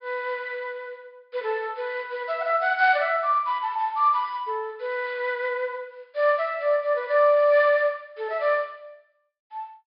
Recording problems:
treble missing; nothing above 5.2 kHz

